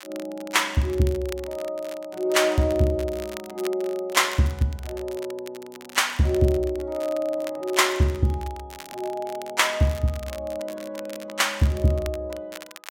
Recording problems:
crackle; vinyl, SNR 19 dB

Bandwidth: 16.5 kHz